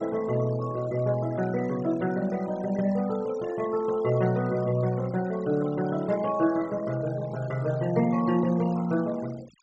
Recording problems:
treble cut off; nothing above 8 kHz
denoising artefacts; signal-to-artefact ratio 18 dB

